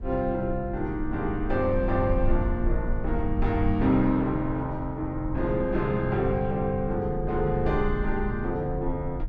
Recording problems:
low-frequency rumble; below 68 Hz, SNR 7 dB

